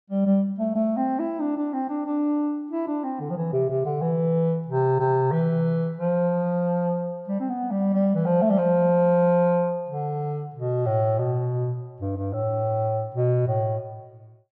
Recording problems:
none

